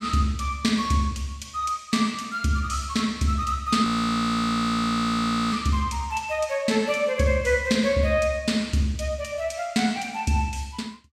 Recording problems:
frozen audio; at 4 s for 1.5 s

